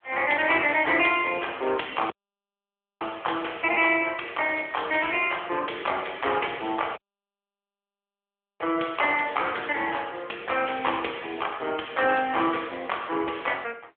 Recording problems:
phone line; 300 Hz to 3.4 kHz, AMR-NB
audio cutting out; at 2 s for 1 s and at 7 s for 1.5 s

